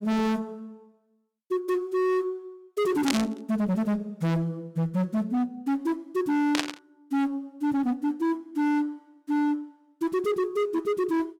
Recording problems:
distorted audio; hard clipping, signal-to-distortion ratio 6 dB
static burst; at 3 s and at 6.5 s; peak +5 dB vs average level

